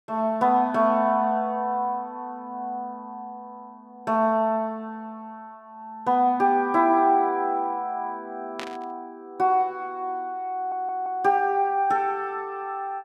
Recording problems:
burst of static; at 8.5 s; peak -6 dB vs average level
stutter; at 11 s

